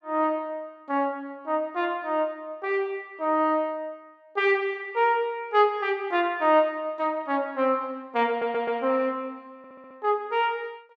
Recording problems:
stutter; at 8.5 s and at 9.5 s

